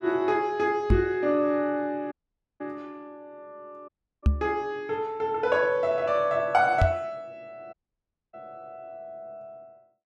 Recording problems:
microphone thump; at 1 s, at 4.5 s and at 7 s; peak +7 dB vs average level
audio cutting out; at 2 s, at 4 s and at 7.5 s for 0.5 s

